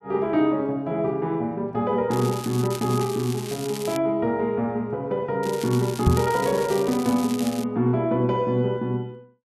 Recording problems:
crackle; from 2 to 4 s and from 5.5 to 7.5 s; loose cable, SNR 13 dB
knock on the microphone; at 6 s; peak +8 dB vs average level

